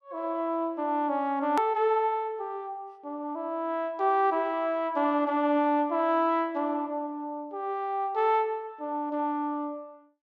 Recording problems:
hard cut with a click; at 1.5 s

